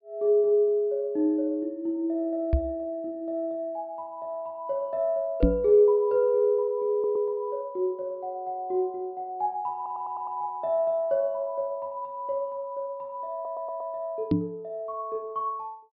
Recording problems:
treble missing; nothing above 5.2 kHz
knock on the microphone; at 2.5 s, at 5.5 s and at 14 s; peak +9 dB vs average level
stutter; at 7 s, at 10 s and at 13 s

